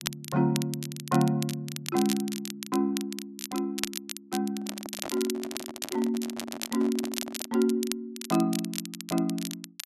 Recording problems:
crackle; vinyl, SNR 7 dB
handling noise; from 4.5 to 7.5 s; peak -4 dB vs average level

